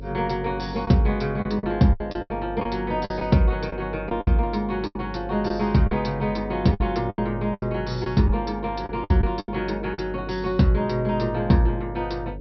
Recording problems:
treble missing; nothing above 5.5 kHz
hum; 50 Hz, harmonics up to 550 Hz, SNR 13 dB
lost packets; 9% of the sound replaced, filled with the last packet

